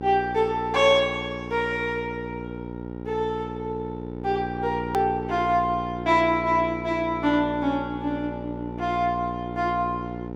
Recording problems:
hum; 60 Hz, harmonics up to 1.4 kHz, SNR 9 dB
click at an edit; at 5 s

